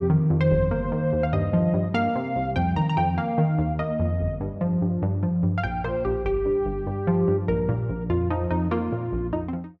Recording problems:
none

